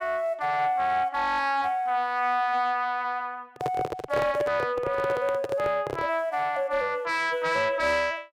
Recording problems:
distortion; soft clipping, signal-to-distortion ratio 11 dB
handling noise; from 3.5 to 6 s; peak -1 dB vs average level

